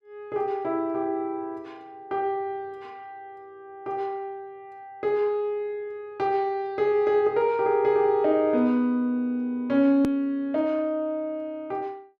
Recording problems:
edit click; at 10 s

